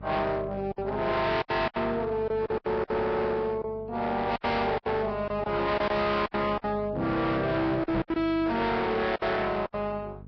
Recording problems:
lossy compression; Vorbis, log-spectral distance 2 dB, nothing above 5.2 kHz
distorted audio; hard clipping, signal-to-distortion ratio 7 dB
hum; 50 Hz, harmonics up to 500 Hz, SNR 17 dB
lost packets; 11% of the sound replaced, filled with silence
microphone thump; at 8 s; peak +2 dB vs average level

